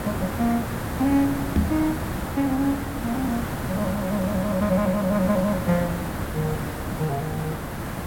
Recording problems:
hiss; SNR 4 dB
knock on the microphone; at 1.5 s; peak +7 dB vs average level

